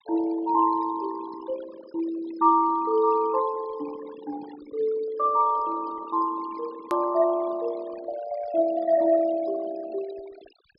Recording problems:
treble cut off; nothing above 5.5 kHz
noise reduction artefacts; signal-to-artefact ratio 17 dB
edit click; at 7 s

